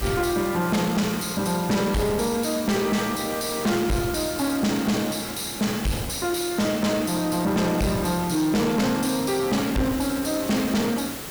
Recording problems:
distortion; soft clipping, signal-to-distortion ratio 7 dB
hiss; slope -3 dB per octave, SNR 10 dB

